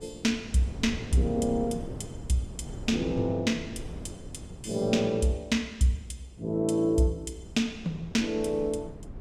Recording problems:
wind on the microphone; below 260 Hz, SNR 13 dB

